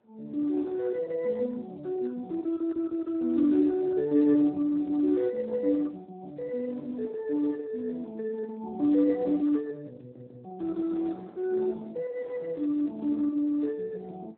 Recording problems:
phone line; 260 Hz to 2 kHz, Speex
wind on the microphone; below 760 Hz, SNR 26 dB

